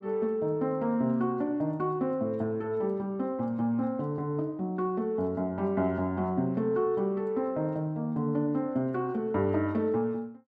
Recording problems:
none

